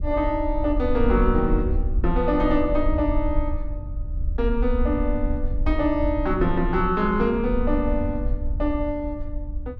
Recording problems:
wind noise; below 60 Hz, SNR 4 dB

